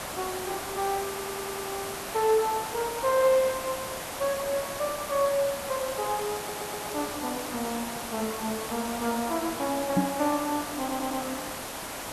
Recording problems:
hiss; SNR 5 dB
stutter; at 1 s, at 6.5 s and at 11 s
crackle; from 5.5 to 9.5 s; loose cable, SNR 18 dB
microphone thump; at 10 s; peak +8 dB vs average level

